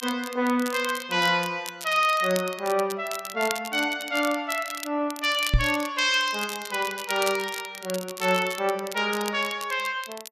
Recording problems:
crackling; vinyl, SNR 12 dB
microphone bump; at 5.5 s; peak +7 dB vs average level

